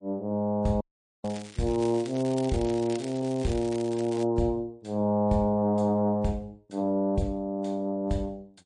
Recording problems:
lossy codec; MP3, log-spectral distance 2 dB, nothing above 9.2 kHz
dropout; at 1 s
crackle; from 1 to 4 s; loose cable, SNR 17 dB

